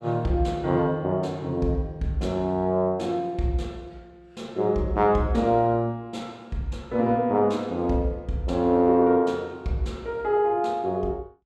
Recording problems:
none

